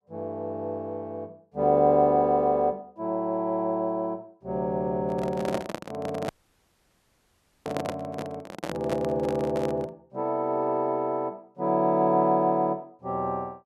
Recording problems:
microphone handling noise; from 5 to 10 s; peak -1 dB vs average level
dropout; at 6.5 s for 1.5 s

